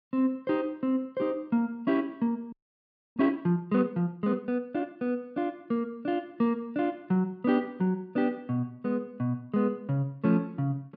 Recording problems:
audio freezing; at 2.5 s for 0.5 s

